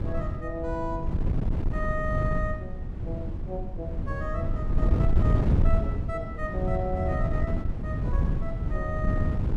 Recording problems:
wind on the microphone; below 130 Hz, SNR -6 dB

